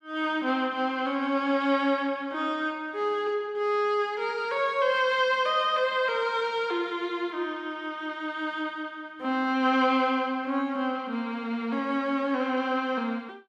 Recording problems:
none

